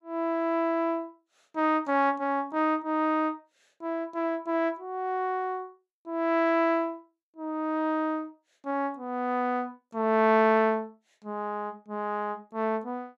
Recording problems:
none

